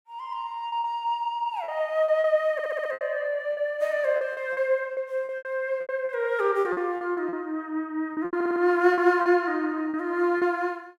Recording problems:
packet loss; 12% of the sound replaced, filled with repeated pitch periods
stutter; at 2.5 s and at 8.5 s

